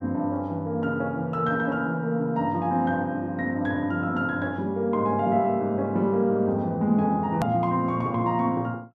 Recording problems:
click at an edit; at 7.5 s

